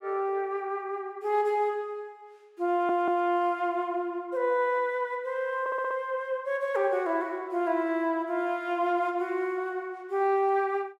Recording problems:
audio stuttering; at 2.5 s and at 5.5 s

